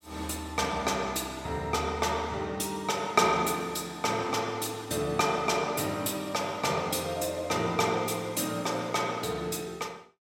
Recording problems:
none

